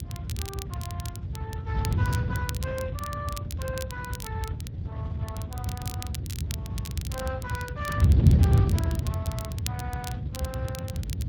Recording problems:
lossy compression; Speex, log-spectral distance 2 dB
low-frequency rumble; below 100 Hz, SNR 3 dB
wind noise; below 150 Hz, SNR -10 dB
crackling; vinyl, SNR 4 dB

